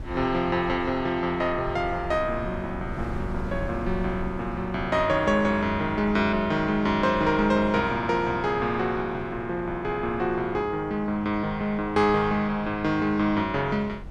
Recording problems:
wind noise; below 140 Hz, SNR 15 dB

